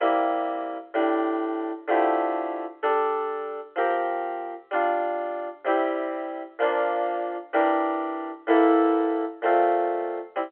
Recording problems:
telephone audio; 280 Hz to 3.2 kHz, G.711

